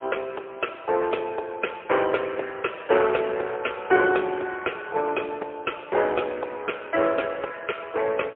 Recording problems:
telephone audio; 320 Hz to 3.4 kHz, AMR-NB, then MP3

